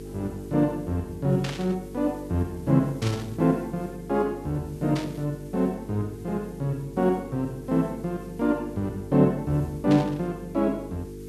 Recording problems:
hum; 50 Hz, harmonics up to 450 Hz, SNR 13 dB
background hiss; slope 0 dB per octave, SNR 28 dB
burst of static; 4 times, first at 1.5 s; peak -4 dB vs average level

